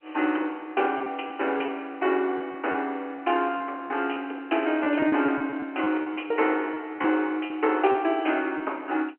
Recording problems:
telephone audio; 240 Hz to 3.1 kHz, G.711
packet loss; 7% of the sound replaced, filled with repeated pitch periods

